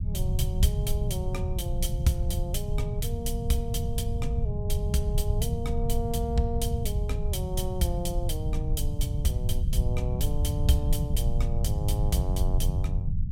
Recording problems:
low-frequency rumble; below 110 Hz, SNR -3 dB

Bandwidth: 16 kHz